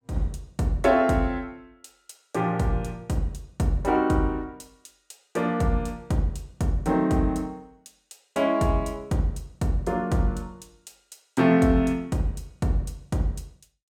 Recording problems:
none

